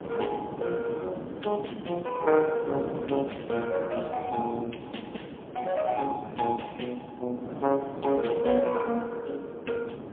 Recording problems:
phone line; 190 Hz to 3.3 kHz, AMR-NB, then MP3
wind on the microphone; below 520 Hz, SNR 10 dB

